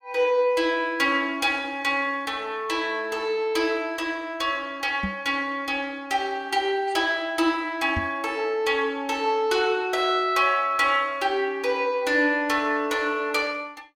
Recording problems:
knock on the microphone; at 5 s and at 8 s; peak -2 dB vs average level

